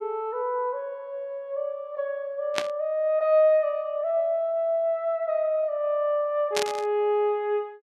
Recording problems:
burst of static; at 2.5 s and at 6.5 s; peak +3 dB vs average level

